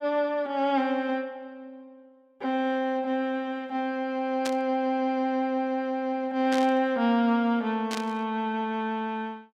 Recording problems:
burst of static; at 4.5 s, at 6.5 s and at 8 s; peak -3 dB vs average level

